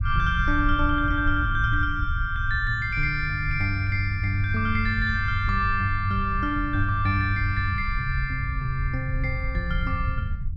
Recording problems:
low-frequency rumble; below 88 Hz, SNR 5 dB

